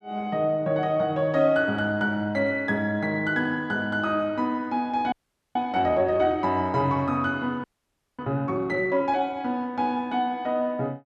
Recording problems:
audio freezing; at 5 s and at 7.5 s for 0.5 s

